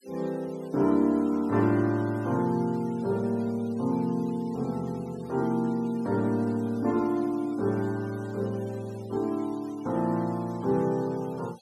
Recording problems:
denoising artefacts; signal-to-artefact ratio 24 dB

